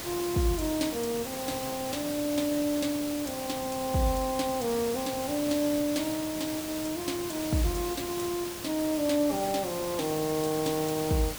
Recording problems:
background hiss; slope -2 dB per octave, SNR 6 dB

